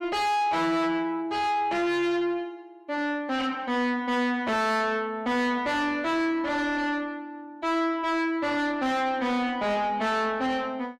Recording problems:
distortion; soft clipping, signal-to-distortion ratio 6 dB

